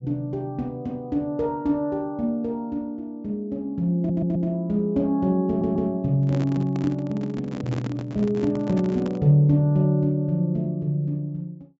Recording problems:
treble missing; nothing above 7.6 kHz
stutter; at 4 s and at 5.5 s
microphone handling noise; from 6 to 9 s; peak -4 dB vs average level

